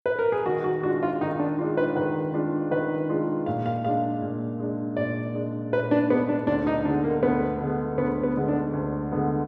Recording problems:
none

